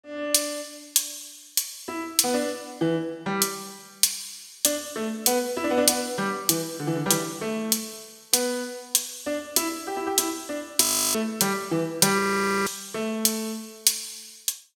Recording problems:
audio freezing; at 11 s and at 12 s

